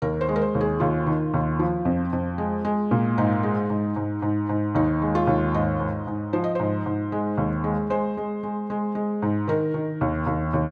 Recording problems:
none

